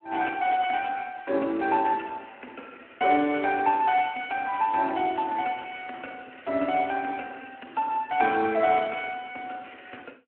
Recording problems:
phone line; 240 Hz to 3.1 kHz, Speex

